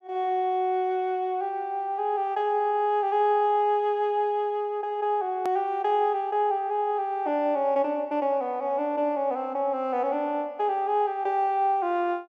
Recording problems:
hard cut with a click; at 5.5 s

